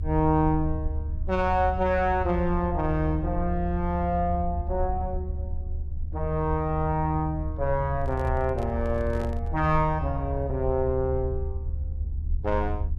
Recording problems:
rumble; below 76 Hz, SNR 5 dB
microphone handling noise; from 8 to 9.5 s; peak -8 dB vs average level

